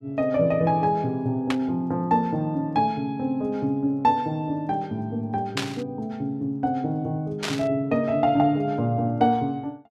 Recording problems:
static burst; at 1.5 s, at 5.5 s and at 7.5 s; peak +2 dB vs average level

